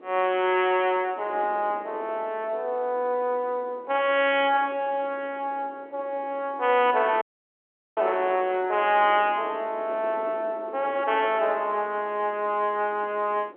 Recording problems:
phone line; 300 Hz to 3.3 kHz, G.711
wind noise; below 620 Hz, SNR 19 dB
audio cutting out; at 7 s for 1 s

